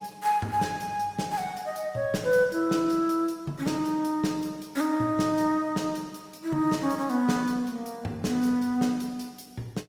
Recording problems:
codec artefacts; Opus, log-spectral distance 3 dB, nothing above 18 kHz

